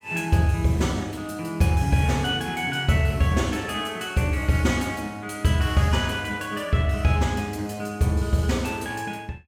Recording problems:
none

